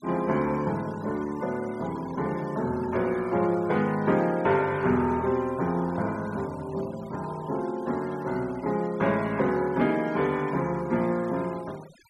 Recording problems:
denoising artefacts; signal-to-artefact ratio 21 dB

